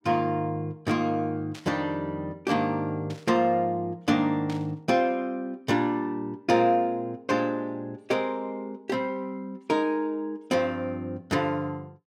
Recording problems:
static burst; at 1.5 s, at 3 s and at 4.5 s; peak -10 dB vs average level

